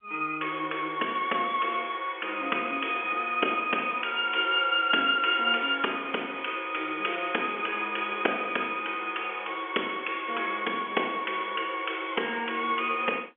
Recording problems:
phone line; 260 Hz to 3.4 kHz, G.711

